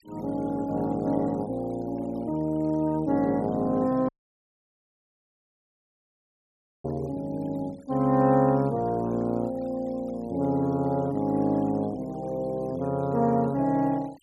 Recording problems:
denoising artefacts; signal-to-artefact ratio 28 dB
dropout; at 4 s for 3 s

